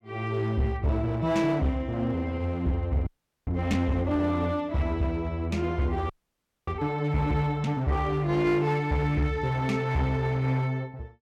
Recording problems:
distorted audio; hard clipping, uneven, signal-to-distortion ratio 11 dB
frozen audio; at 3 s and at 6 s for 0.5 s

